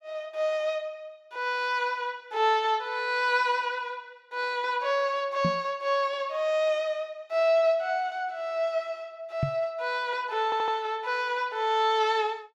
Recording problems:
microphone thump; at 5.5 s and at 9.5 s; peak +3 dB vs average level
stutter; at 10 s

